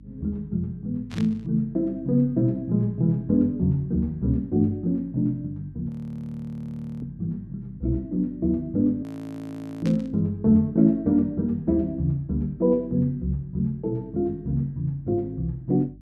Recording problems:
hum; 50 Hz, harmonics up to 300 Hz, SNR 23 dB
static burst; at 1 s and at 10 s; peak -10 dB vs average level
audio freezing; at 6 s for 1 s and at 9 s for 1 s

